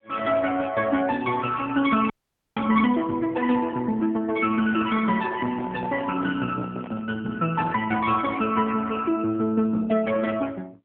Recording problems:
phone line; 130 Hz to 2.9 kHz, AMR-NB
audio freezing; at 2 s
microphone handling noise; from 4.5 to 7 s; peak -9 dB vs average level

